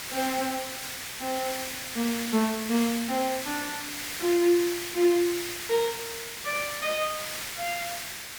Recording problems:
background hiss; SNR 5 dB

